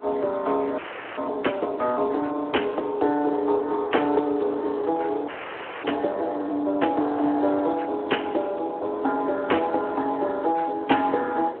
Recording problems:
phone line; 260 Hz to 3.1 kHz, Speex
wind on the microphone; below 810 Hz, SNR 18 dB
audio freezing; at 1 s and at 5.5 s for 0.5 s

